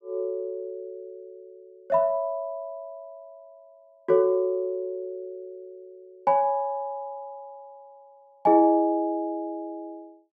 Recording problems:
none

